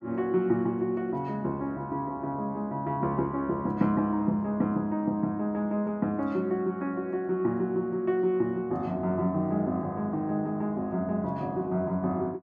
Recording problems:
none

